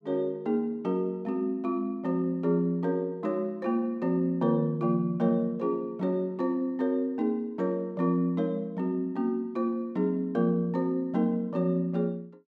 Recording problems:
none

